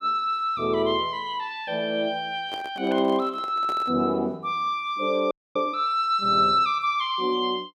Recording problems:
microphone handling noise; from 2.5 to 4 s; peak -9 dB vs average level
audio freezing; at 5.5 s

